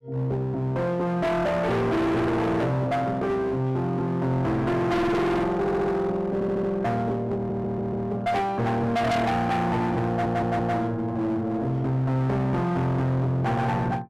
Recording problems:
distortion; hard clipping, uneven, signal-to-distortion ratio 5 dB
stutter; 4 times, first at 5.5 s

